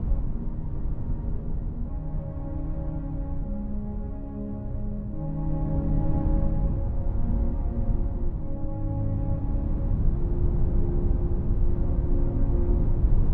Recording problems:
wind on the microphone; below 90 Hz, SNR -4 dB

